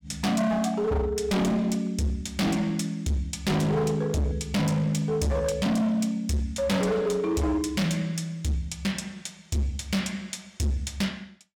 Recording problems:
distortion; hard clipping, signal-to-distortion ratio 8 dB

